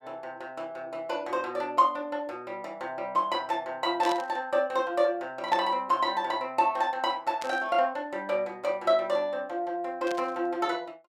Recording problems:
static burst; 4 times, first at 4 s; peak -5 dB vs average level

